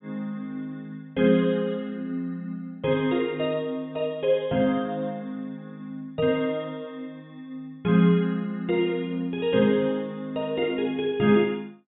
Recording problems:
treble cut off; nothing above 3.6 kHz

